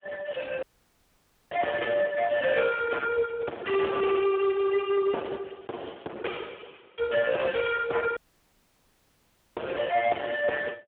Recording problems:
phone line; 300 Hz to 2.6 kHz, Speex
distortion; hard clipping, signal-to-distortion ratio 12 dB
audio cutting out; at 0.5 s for 1 s and at 8 s for 1.5 s

